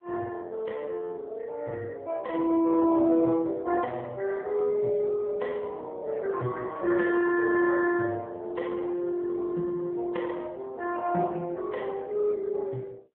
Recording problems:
telephone audio; 150 Hz to 2.9 kHz, AMR-NB

